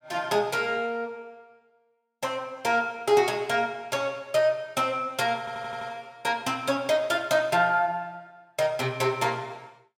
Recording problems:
stutter; at 5.5 s

